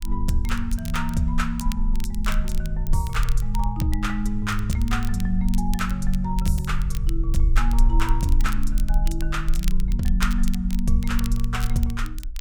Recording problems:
low-frequency rumble; below 40 Hz, strongest tone 24 Hz, SNR 1 dB
crackle; vinyl, SNR 14 dB

